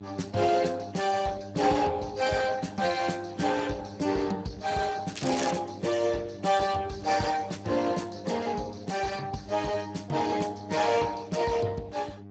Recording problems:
lossy codec; Speex, log-spectral distance 6 dB, nothing above 7.6 kHz
electrical hum; 50 Hz, harmonics up to 1.2 kHz, SNR 15 dB
crackle; at 5 s; loose cable, SNR 9 dB

